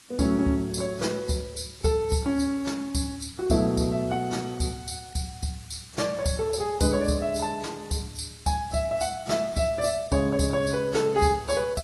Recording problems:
lossy codec; AAC, log-spectral distance 6 dB, nothing above 11.3 kHz
background hiss; SNR 22 dB

